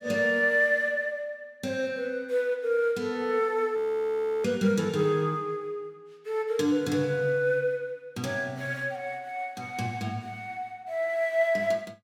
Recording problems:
audio freezing; at 4 s for 0.5 s

